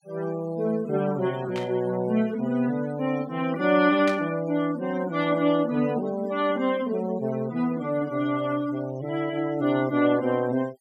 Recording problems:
noise reduction artefacts; signal-to-artefact ratio 20 dB
burst of static; at 1.5 s and at 4 s; peak -5 dB vs average level

